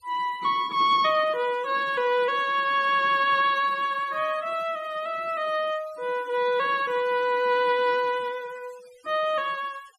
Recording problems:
denoising artefacts; signal-to-artefact ratio 23 dB

